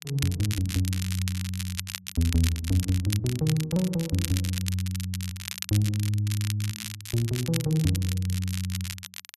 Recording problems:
crackling; vinyl, SNR 8 dB

